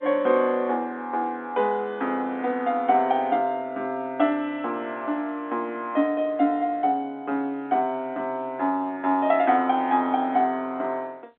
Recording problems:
phone line; 220 Hz to 4 kHz, G.711

